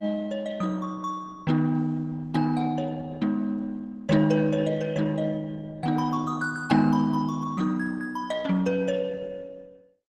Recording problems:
lossy compression; Opus, log-spectral distance 3 dB, nothing above 15.6 kHz

